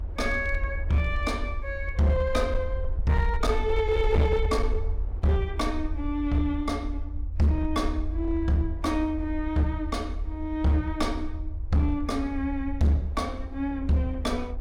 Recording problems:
distortion; hard clipping, signal-to-distortion ratio 12 dB
low-frequency rumble; below 76 Hz, SNR 6 dB
wind on the microphone; below 610 Hz, SNR 24 dB

